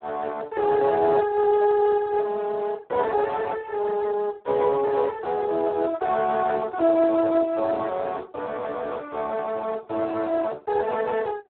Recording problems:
phone line; 340 Hz to 2 kHz, Speex

